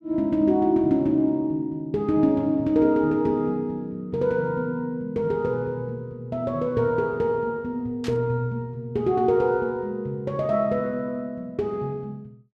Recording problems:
static burst; at 8 s; peak -9 dB vs average level

